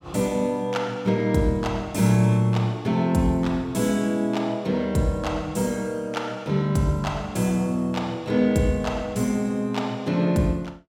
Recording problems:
none

